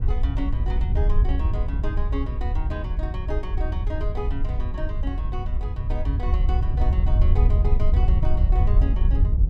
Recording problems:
wind noise; below 72 Hz, SNR -10 dB

